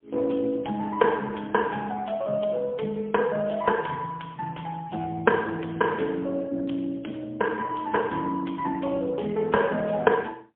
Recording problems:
phone line; 150 Hz to 2.2 kHz, AMR-NB, then MP3

